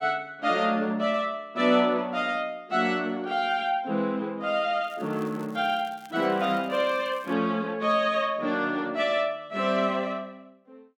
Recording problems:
crackle; from 5 to 7.5 s; loose cable, SNR 28 dB

